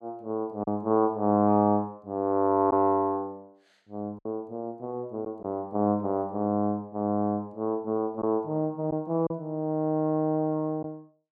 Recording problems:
packet loss; 1.7% of the sound replaced, filled with silence

